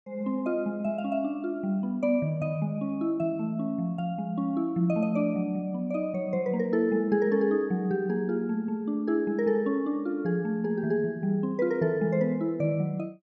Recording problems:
none

